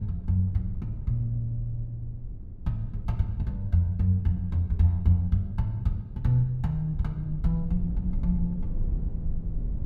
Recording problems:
rumble; below 82 Hz, SNR 9 dB

